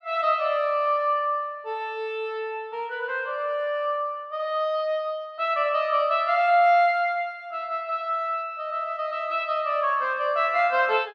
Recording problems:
none

